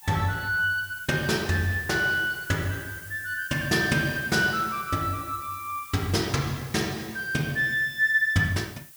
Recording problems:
background hiss; slope +3 dB per octave, SNR 17 dB

